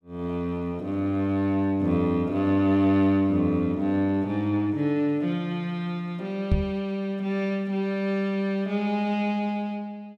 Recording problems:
microphone bump; at 6.5 s; peak +6 dB vs average level

